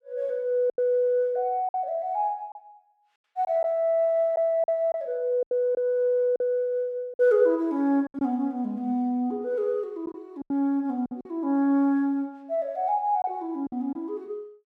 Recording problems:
lost packets; 6% of the sound replaced, filled with silence

